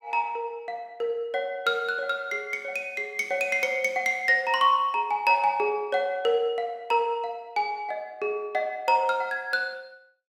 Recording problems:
none

